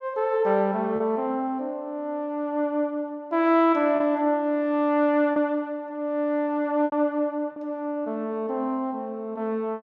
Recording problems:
packet loss; 2% of the sound replaced, filled with repeated pitch periods

